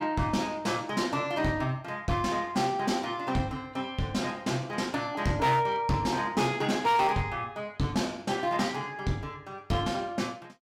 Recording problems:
distorted audio; hard clipping, signal-to-distortion ratio 11 dB

